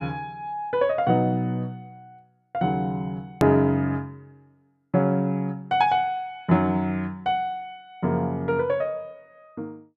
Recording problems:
edit click; at 3.5 s

